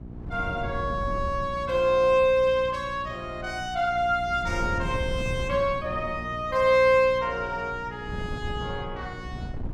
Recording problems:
hum; 60 Hz, harmonics up to 780 Hz, SNR 17 dB
wind noise; below 150 Hz, SNR 13 dB

